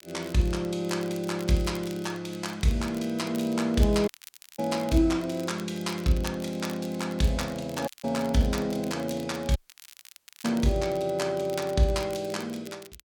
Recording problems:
crackling; vinyl, SNR 19 dB
audio cutting out; at 4 s for 0.5 s, at 8 s and at 9.5 s for 1 s

